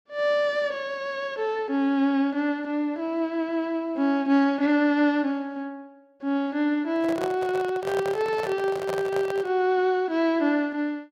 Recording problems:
microphone handling noise; from 7 to 9.5 s; peak -3 dB vs average level

